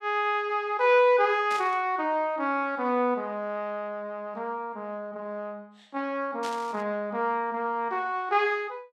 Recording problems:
burst of static; at 1.5 s and at 6.5 s; peak -8 dB vs average level

